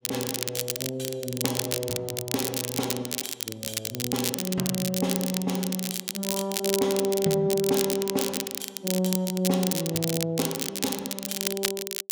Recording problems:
crackling; vinyl, SNR 1 dB

